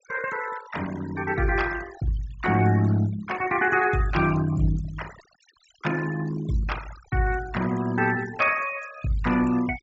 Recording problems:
low-pass filter; nothing above 8 kHz
noise reduction artefacts; signal-to-artefact ratio 15 dB

